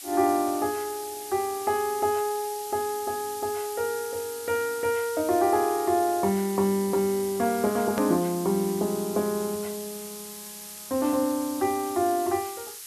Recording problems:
hiss; slope +4 dB per octave, SNR 11 dB
edit click; at 8 s

